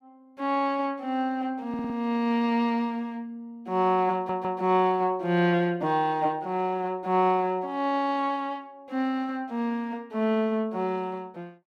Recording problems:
audio stuttering; at 1.5 s and at 4 s

